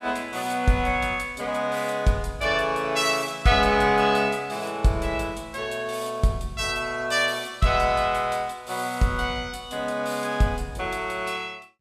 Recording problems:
none

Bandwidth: 14.5 kHz